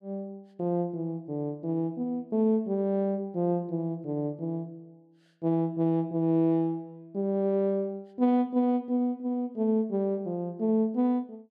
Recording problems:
none

